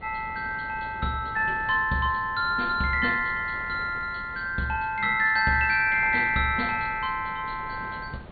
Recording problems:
treble cut off; nothing above 4.5 kHz
wind noise; below 660 Hz, SNR 19 dB

